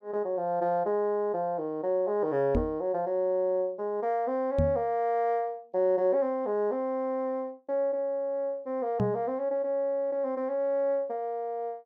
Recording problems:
microphone bump; at 2.5 s, at 4.5 s and at 9 s; peak +4 dB vs average level

